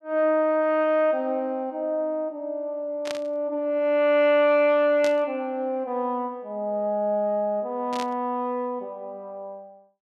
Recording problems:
burst of static; at 3 s, at 5 s and at 8 s; peak -6 dB vs average level

